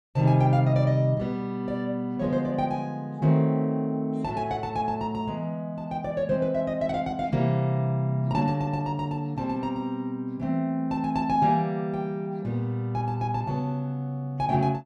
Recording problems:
none

